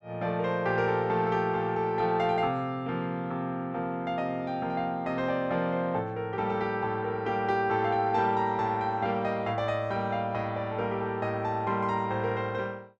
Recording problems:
none

